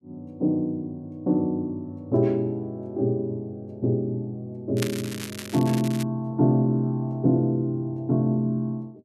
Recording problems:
crackle; from 5 to 6 s; loose cable, SNR 12 dB

